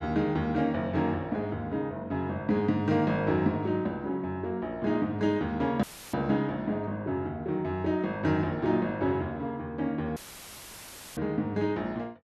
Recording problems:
dropout; at 6 s and at 10 s for 1 s; filled with static

